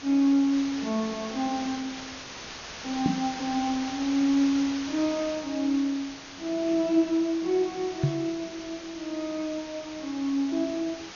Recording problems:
low-pass filter; nothing above 6.8 kHz
hiss; slope -1 dB per octave, SNR 12 dB
knock on the microphone; at 3 s and at 8 s; peak +6 dB vs average level

